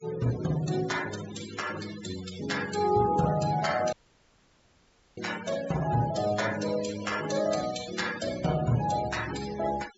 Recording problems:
treble cut off; nothing above 8 kHz
denoising artefacts; signal-to-artefact ratio 11 dB
dropout; at 4 s for 1 s

